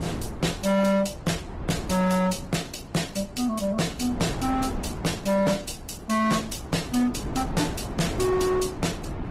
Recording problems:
lossy compression; Vorbis, then Opus, log-spectral distance 4 dB, nothing above 15.5 kHz
distorted audio; hard clipping, signal-to-distortion ratio 8 dB
wind on the microphone; below 450 Hz, SNR 10 dB

